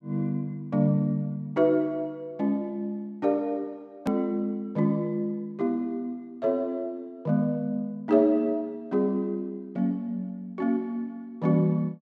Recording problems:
hard cut with a click; at 4 s

